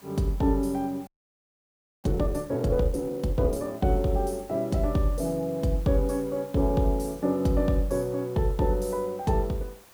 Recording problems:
background hiss; slope -3 dB per octave, SNR 24 dB
frozen audio; at 1 s for 1 s

